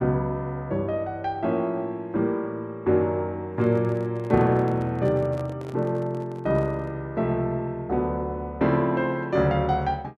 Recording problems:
microphone handling noise; from 3.5 to 7 s; peak -11 dB vs average level

